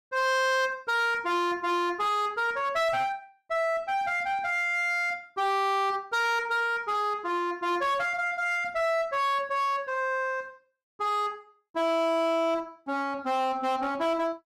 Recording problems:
distorted audio; hard clipping, uneven, signal-to-distortion ratio 10 dB

